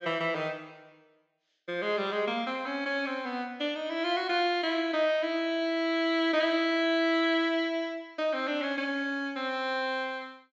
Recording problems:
treble cut off; nothing above 8 kHz

